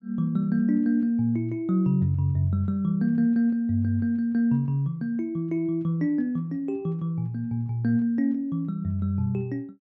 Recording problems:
none

